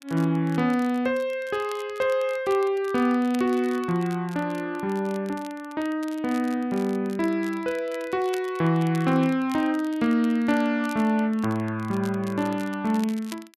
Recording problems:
crackling; vinyl, SNR 22 dB

